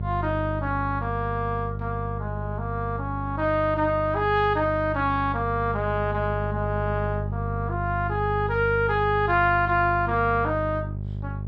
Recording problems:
hum; 50 Hz, harmonics up to 450 Hz, SNR 6 dB

